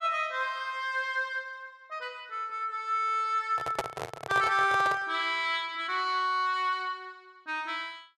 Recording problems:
microphone handling noise; from 3.5 to 5 s; peak +3 dB vs average level

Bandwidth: 12.5 kHz